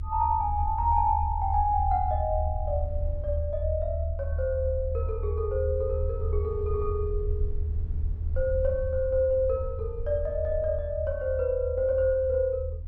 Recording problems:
rumble; below 80 Hz, strongest tone 78 Hz, SNR 4 dB

